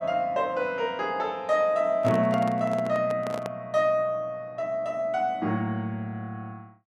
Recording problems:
microphone handling noise; from 2 to 3.5 s; peak -4 dB vs average level

